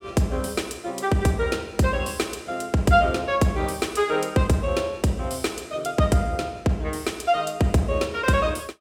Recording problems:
none

